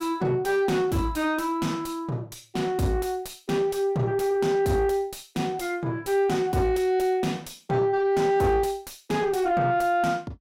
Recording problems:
distortion; soft clipping, signal-to-distortion ratio 10 dB

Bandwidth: 16 kHz